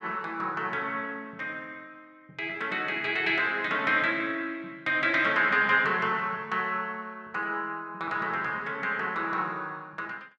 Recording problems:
none

